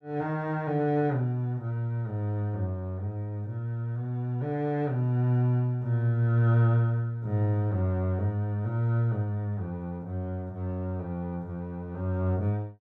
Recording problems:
none

